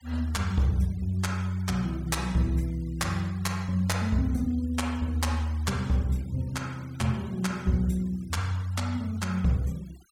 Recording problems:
denoising artefacts; signal-to-artefact ratio 23 dB

